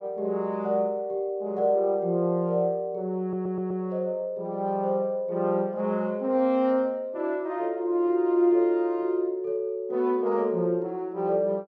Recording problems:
audio stuttering; at 3 s

